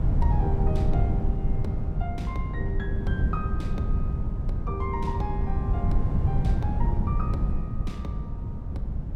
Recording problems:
wind noise; below 120 Hz, SNR -7 dB

